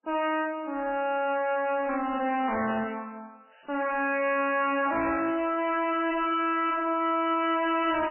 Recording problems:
lossy compression; MP3, then AAC, log-spectral distance 4 dB, nothing above 2.7 kHz
distorted audio; soft clipping, signal-to-distortion ratio 7 dB

